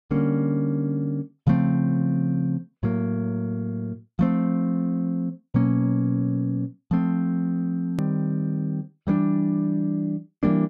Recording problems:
edit click; at 8 s

